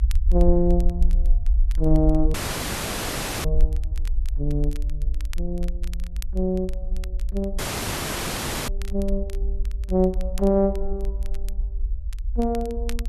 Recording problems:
rumble; below 52 Hz, SNR 2 dB
crackle; vinyl, SNR 22 dB
audio cutting out; at 2.5 s for 1 s and at 7.5 s for 1 s

